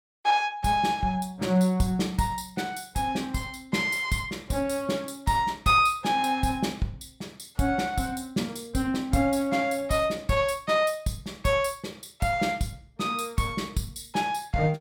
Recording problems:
none

